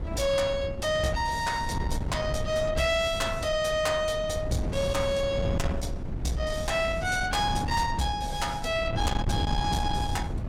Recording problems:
distortion; soft clipping, signal-to-distortion ratio 11 dB
wind on the microphone; below 220 Hz, SNR 5 dB

